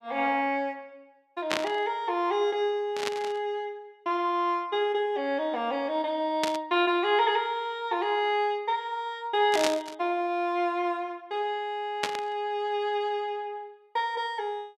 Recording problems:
static burst; 5 times, first at 1.5 s; peak +4 dB vs average level

